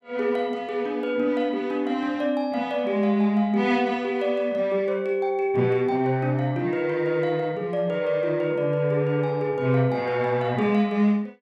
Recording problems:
none

